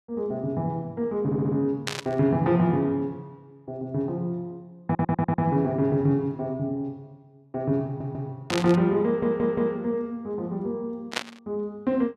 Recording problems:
stutter; 4 times, first at 1 s
static burst; at 2 s, at 8.5 s and at 11 s; peak +4 dB vs average level

